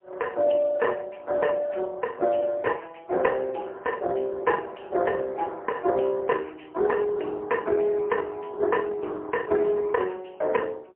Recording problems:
telephone audio; 320 Hz to 2.7 kHz, AMR-NB, then MP3

